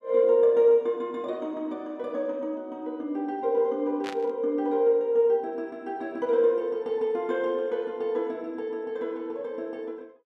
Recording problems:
burst of static; at 4 s; peak -6 dB vs average level

